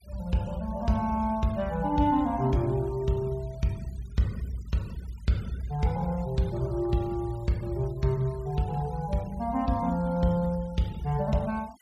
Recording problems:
denoising artefacts; signal-to-artefact ratio 25 dB

